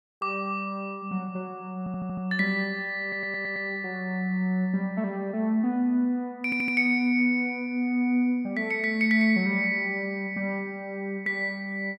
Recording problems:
audio stuttering; at 2 s, at 3 s and at 6.5 s

